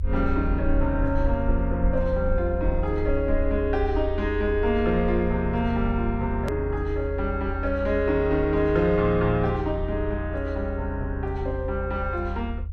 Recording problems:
rumble; below 80 Hz, SNR 5 dB
click at an edit; at 6.5 s

